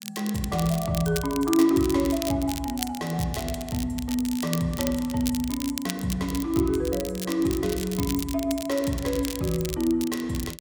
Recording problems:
crackle; vinyl, SNR 10 dB

